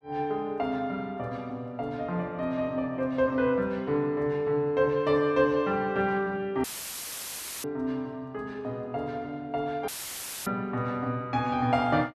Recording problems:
audio cutting out; at 6.5 s for 1 s and at 10 s for 0.5 s; filled with static

